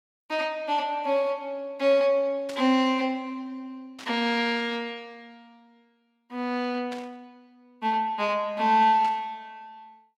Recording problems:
burst of static; 4 times, first at 2.5 s; peak -11 dB vs average level

